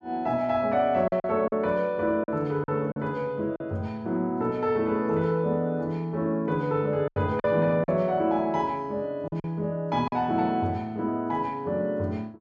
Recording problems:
lost packets; 5% of the sound replaced, filled with silence

